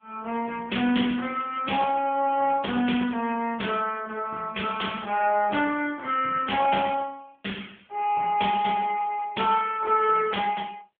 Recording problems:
phone line; 220 Hz to 3.3 kHz, AMR-NB

